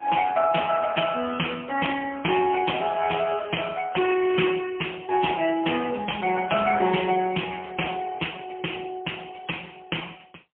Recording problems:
telephone audio; 220 Hz to 3.3 kHz, AMR-NB, then MP3

